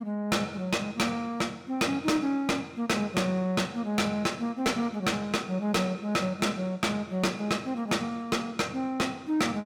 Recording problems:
distorted audio; hard clipping, signal-to-distortion ratio 6 dB

